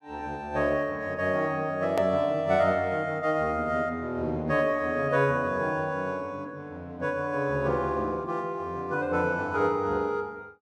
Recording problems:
click at an edit; at 2 s

